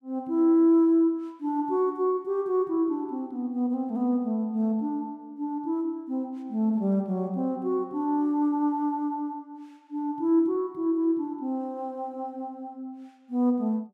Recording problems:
none

